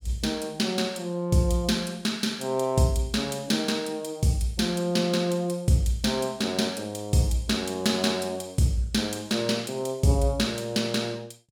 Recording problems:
none

